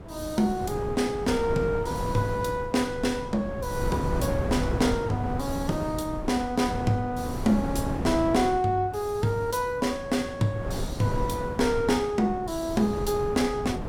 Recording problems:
wind noise; below 370 Hz, SNR 7 dB

